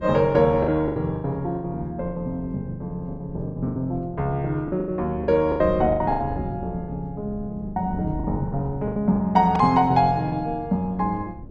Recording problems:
wind on the microphone; below 220 Hz, SNR 14 dB
lost packets; 13% of the sound replaced, filled with the last packet

